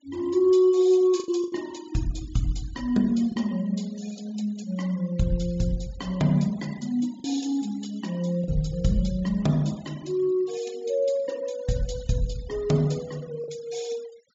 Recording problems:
treble cut off; nothing above 8 kHz
noise reduction artefacts; signal-to-artefact ratio 22 dB
packet loss; 2% of the sound replaced, filled with the last packet

